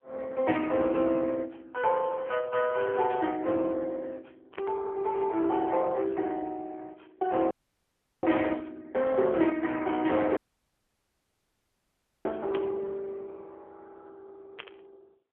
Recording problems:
phone line; 280 Hz to 3.5 kHz, AMR-NB
static burst; 5 times, first at 3 s; peak -8 dB vs average level
audio cutting out; at 7.5 s for 0.5 s and at 10 s for 2 s

